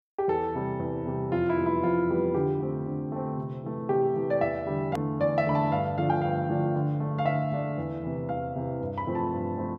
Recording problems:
hard cut with a click; at 5 s

